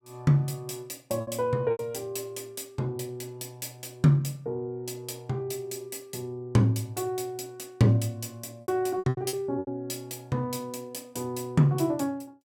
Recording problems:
packet loss; 4% of the sound replaced, filled with repeated pitch periods

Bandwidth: 17.5 kHz